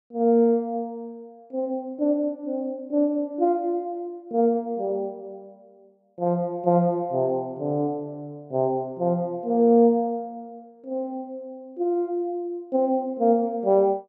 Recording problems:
none

